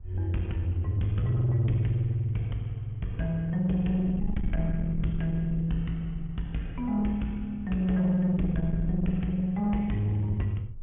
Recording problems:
treble cut off; nothing above 3.3 kHz
distortion; soft clipping, signal-to-distortion ratio 10 dB
wind noise; below 78 Hz, SNR 12 dB

